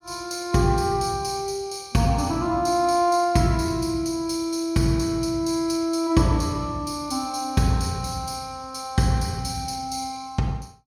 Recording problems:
none

